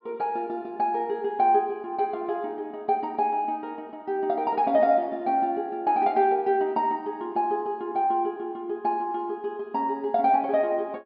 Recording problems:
treble cut off; nothing above 5.3 kHz

